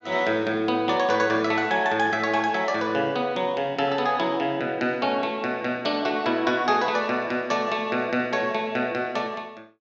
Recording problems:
none

